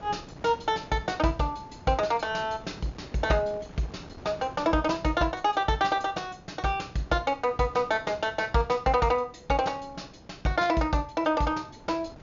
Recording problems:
treble cut off; nothing above 7 kHz
wind on the microphone; below 640 Hz, SNR 20 dB

